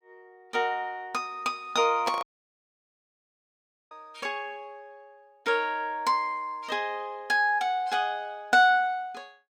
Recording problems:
microphone handling noise; at 2 s; peak -2 dB vs average level
audio cutting out; at 2 s for 1.5 s

